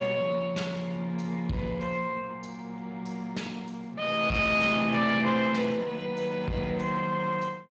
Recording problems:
codec artefacts; Speex, log-spectral distance 3 dB
distorted audio; soft clipping, signal-to-distortion ratio 11 dB

